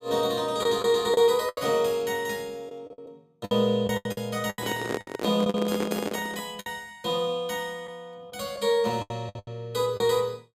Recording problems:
lost packets; 10% of the sound replaced, filled with the last packet
handling noise; from 4.5 to 6.5 s; peak +1 dB vs average level

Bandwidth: 15.5 kHz